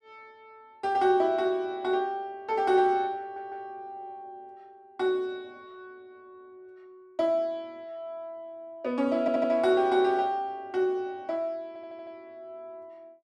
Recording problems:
audio stuttering; at 3 s, at 9 s and at 12 s

